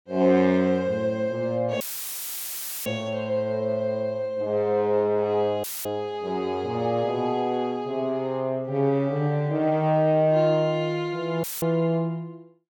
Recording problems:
audio cutting out; at 2 s for 1 s, at 5.5 s and at 11 s; filled with static

